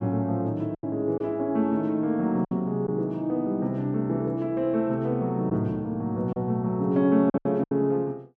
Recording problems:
lost packets; 5% of the sound replaced, filled with silence

